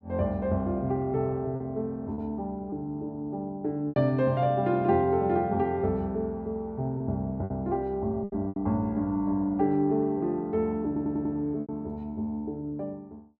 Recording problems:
lost packets; 4% of the sound replaced, filled with repeated pitch periods
stutter; at 11 s

